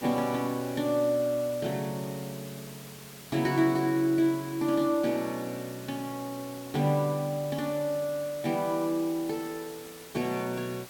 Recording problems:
hiss; slope -2 dB per octave, SNR 16 dB

